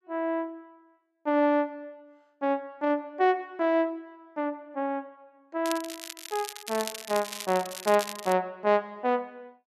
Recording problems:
crackling; from 5.5 to 8.5 s; loose cable, SNR 10 dB

